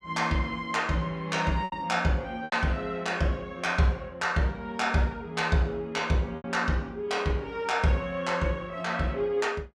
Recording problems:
packet loss; 2% of the sound replaced, filled with repeated pitch periods

